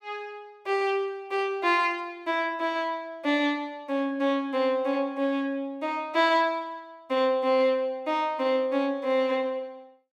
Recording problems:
none

